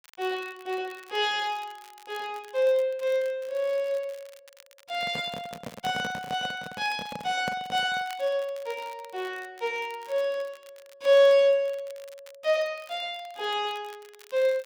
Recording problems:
crackling; vinyl, SNR 25 dB
microphone handling noise; from 5 to 8 s; peak -3 dB vs average level

